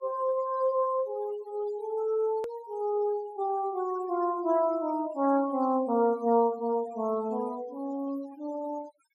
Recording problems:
noise reduction artefacts; signal-to-artefact ratio 21 dB
click at an edit; at 2.5 s

